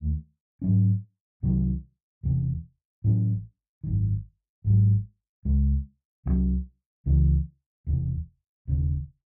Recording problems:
none

